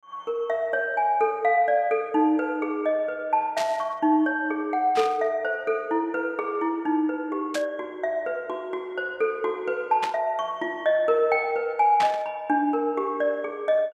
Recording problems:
static burst; 5 times, first at 3.5 s; peak -2 dB vs average level

